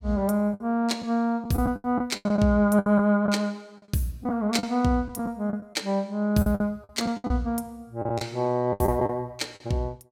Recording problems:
lost packets; 11% of the sound replaced, filled with the last packet

